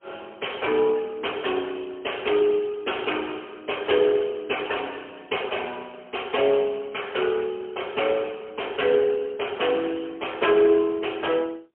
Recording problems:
phone line; 280 Hz to 3.2 kHz, AMR-NB, then MP3

